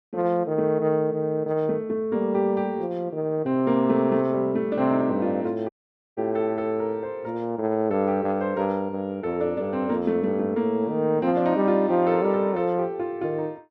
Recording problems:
audio cutting out; at 5.5 s

